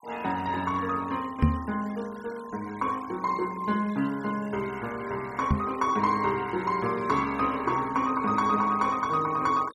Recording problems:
noise reduction artefacts; signal-to-artefact ratio 19 dB
microphone bump; at 1.5 s and at 5.5 s; peak +9 dB vs average level

